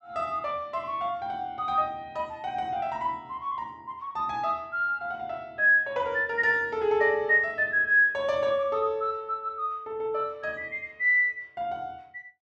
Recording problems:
none

